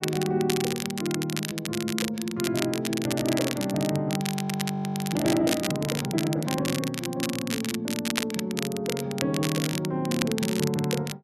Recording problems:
crackle; vinyl, SNR 5 dB
audio freezing; at 4.5 s for 1 s

